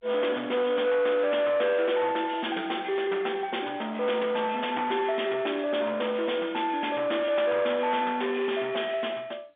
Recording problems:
telephone audio; 300 Hz to 3.6 kHz, G.711
distorted audio; soft clipping, signal-to-distortion ratio 10 dB

